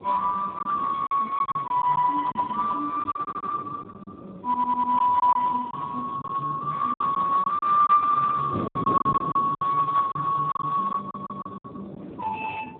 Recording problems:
telephone audio; 280 Hz to 2 kHz, Speex
wind noise; below 440 Hz, SNR 15 dB
lost packets; 9% of the sound replaced, filled with silence
stutter; at 3 s, at 4.5 s and at 11 s

